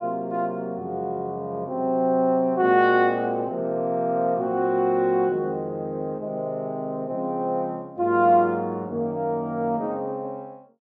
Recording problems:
none

